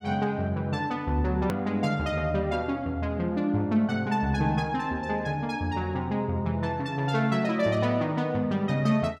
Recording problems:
edit click; at 1.5 s

